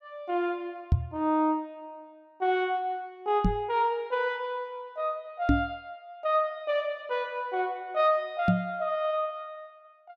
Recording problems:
microphone bump; 4 times, first at 1 s; peak +9 dB vs average level

